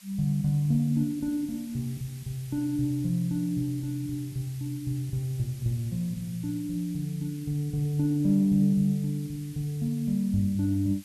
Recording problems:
background hiss; slope +4 dB per octave, SNR 21 dB

